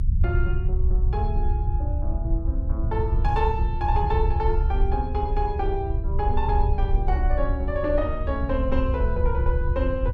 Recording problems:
rumble; below 72 Hz, SNR -3 dB

